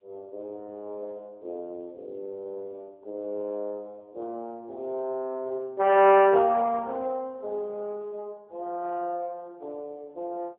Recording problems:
phone line; 320 Hz to 3.1 kHz, AMR-NB

